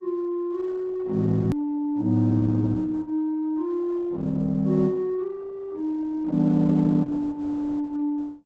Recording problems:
codec artefacts; Opus, log-spectral distance 2 dB, nothing above 13.1 kHz
edit click; at 1.5 s

